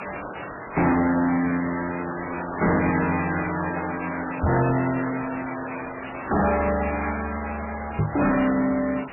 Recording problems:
lossy codec; AAC, then MP3, log-spectral distance 19 dB, nothing above 2.4 kHz
distortion; hard clipping, signal-to-distortion ratio 7 dB
background hiss; SNR 9 dB
microphone thump; at 4.5 s and at 8 s; peak +4 dB vs average level

